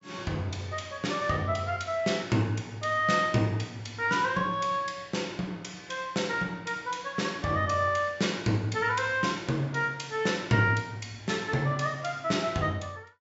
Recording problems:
treble cut off; nothing above 8 kHz

